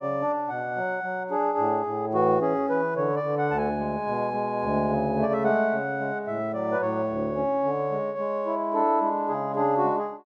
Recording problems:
none

